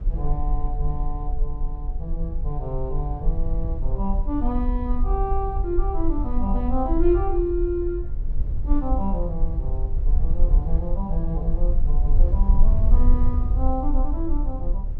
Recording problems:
rumble; below 48 Hz, strongest tone 20 Hz, SNR -3 dB

